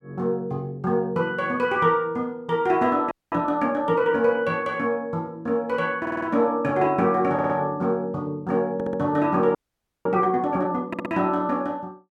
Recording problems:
frozen audio; at 3 s and at 9.5 s for 0.5 s
stutter; 4 times, first at 6 s

